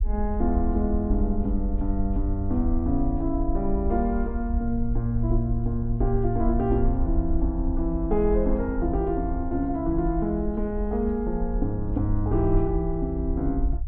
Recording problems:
treble missing; nothing above 3.9 kHz
low-frequency rumble; below 56 Hz, SNR 4 dB

